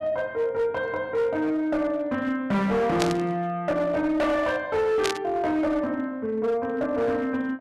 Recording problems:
distorted audio; hard clipping, uneven, signal-to-distortion ratio 10 dB
static burst; at 3 s and at 5 s; peak +2 dB vs average level

